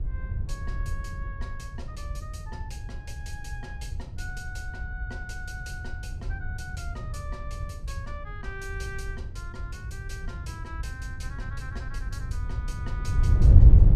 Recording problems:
wind noise; below 92 Hz, SNR -12 dB

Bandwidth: 14.5 kHz